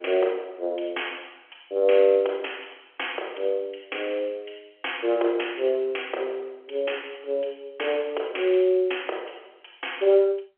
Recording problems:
phone line; 320 Hz to 3.3 kHz, G.711

